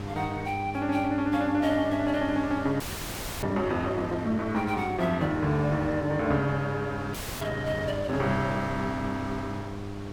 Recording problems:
hum; 50 Hz, harmonics up to 1.1 kHz, SNR 10 dB
wind on the microphone; below 1.2 kHz, SNR 14 dB
frozen audio; at 3 s for 0.5 s and at 7 s

